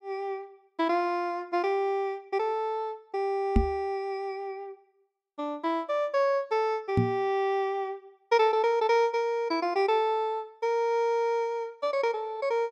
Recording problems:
microphone bump; at 3.5 s and at 7 s; peak +8 dB vs average level

